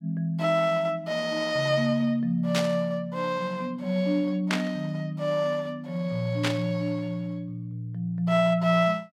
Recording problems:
static burst; at 2.5 s, at 4.5 s and at 6.5 s; peak +2 dB vs average level

